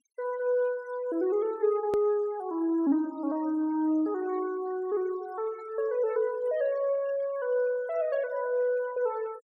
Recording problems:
noise reduction artefacts; signal-to-artefact ratio 24 dB
edit click; at 2 s

